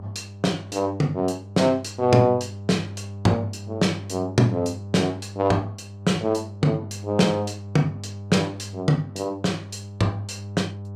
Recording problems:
electrical hum; 50 Hz, harmonics up to 800 Hz, SNR 13 dB

